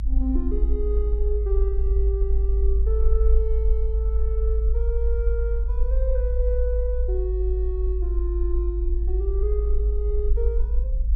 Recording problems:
rumble; below 54 Hz, strongest tone 52 Hz, SNR -7 dB

